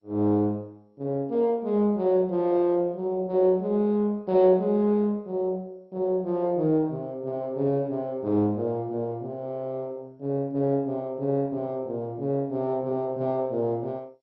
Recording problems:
lossy codec; MP2, log-spectral distance 2 dB, nothing above 5 kHz

